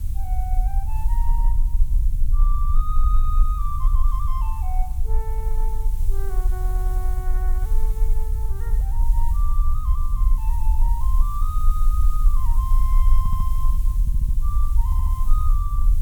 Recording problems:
background hiss; slope -1 dB per octave, SNR 10 dB
rumble; below 46 Hz, strongest tone 22 Hz, SNR -13 dB
stutter; 4 times, first at 6.5 s

